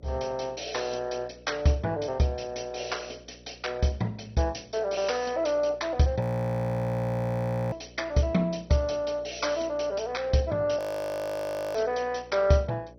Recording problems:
codec artefacts; MP2, log-spectral distance 7 dB, nothing above 17 kHz
hum; 60 Hz, harmonics up to 600 Hz, SNR 24 dB
audio freezing; at 6 s for 1.5 s and at 11 s for 1 s

